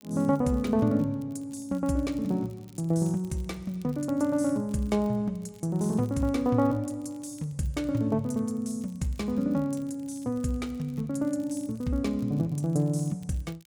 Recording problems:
crackle; vinyl, SNR 29 dB

